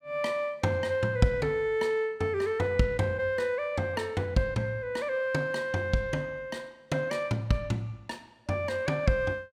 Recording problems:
none

